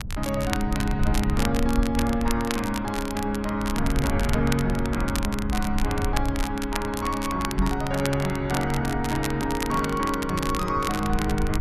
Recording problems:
low-frequency rumble; below 84 Hz, SNR 6 dB
crackle; vinyl, SNR 9 dB
microphone bump; at 7.5 s; peak +4 dB vs average level

